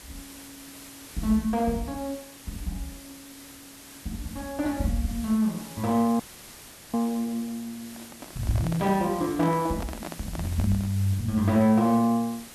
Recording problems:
background hiss; slope -1 dB per octave, SNR 17 dB
frozen audio; at 6 s for 0.5 s
handling noise; from 8 to 11 s; peak -6 dB vs average level

